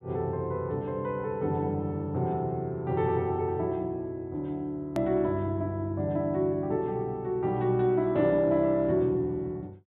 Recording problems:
treble cut off; nothing above 4 kHz
click at an edit; at 5 s

